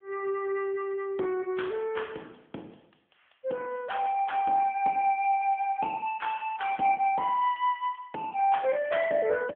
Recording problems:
phone line; 240 Hz to 3.4 kHz, AMR-NB

